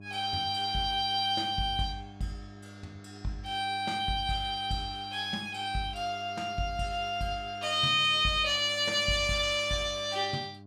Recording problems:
hum; 50 Hz, harmonics up to 1 kHz, SNR 20 dB

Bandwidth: 16.5 kHz